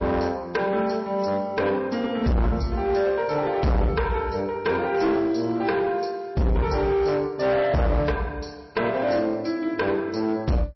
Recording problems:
lossy compression; MP3, log-spectral distance 2 dB, nothing above 5.7 kHz
distorted audio; hard clipping, uneven, signal-to-distortion ratio 6 dB

